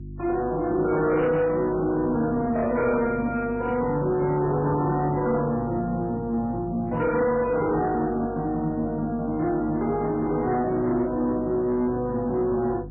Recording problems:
codec artefacts; MP3, log-spectral distance 2 dB, nothing above 2.4 kHz
distorted audio; soft clipping, signal-to-distortion ratio 11 dB
electrical hum; 50 Hz, harmonics up to 350 Hz, SNR 15 dB

